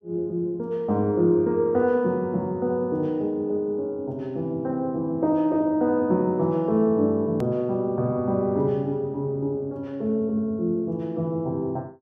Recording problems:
edit click; at 7.5 s

